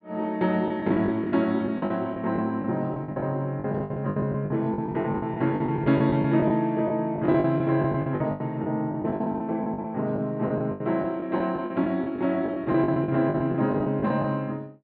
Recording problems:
treble cut off; nothing above 4.9 kHz
packet loss; 16% of the sound replaced, filled with the last packet

